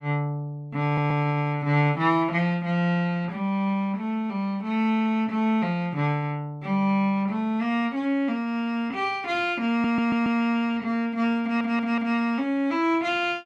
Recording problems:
stutter; at 1 s, at 9.5 s and at 11 s

